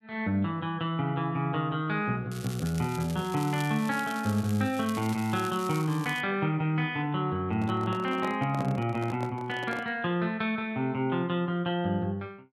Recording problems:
crackle; from 2.5 to 6 s; loose cable, SNR 15 dB
handling noise; from 7.5 to 10 s; peak -5 dB vs average level

